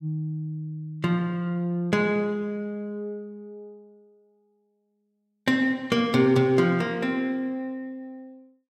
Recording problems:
none

